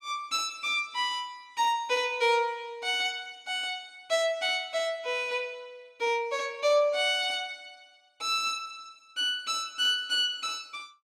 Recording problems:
none

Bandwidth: 15.5 kHz